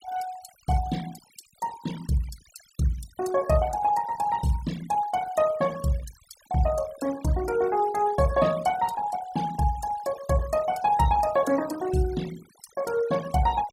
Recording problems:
denoising artefacts; signal-to-artefact ratio 18 dB

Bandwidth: 16 kHz